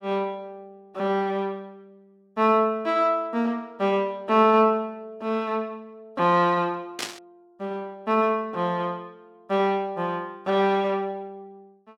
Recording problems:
burst of static; at 7 s; peak -1 dB vs average level

